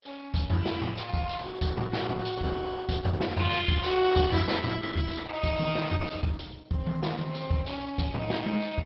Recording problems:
codec artefacts; MP2, then Opus, log-spectral distance 5 dB, nothing above 5.3 kHz

